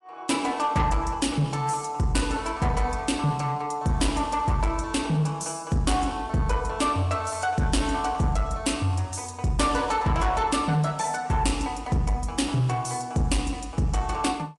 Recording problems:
lossy compression; MP3, log-spectral distance 3 dB, nothing above 11 kHz
distorted audio; soft clipping, signal-to-distortion ratio 11 dB

